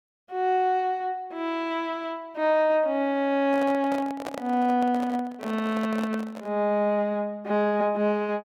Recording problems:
handling noise; from 3.5 to 6.5 s; peak -4 dB vs average level

